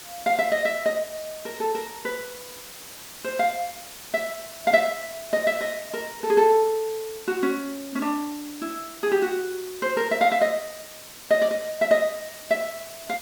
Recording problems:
background hiss; slope 0 dB per octave, SNR 14 dB

